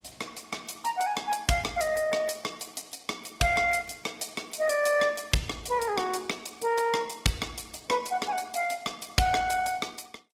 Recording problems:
codec artefacts; Opus, log-spectral distance 5 dB

